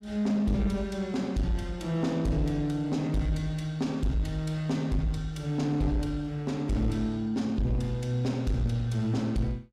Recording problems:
distorted audio; soft clipping, signal-to-distortion ratio 12 dB

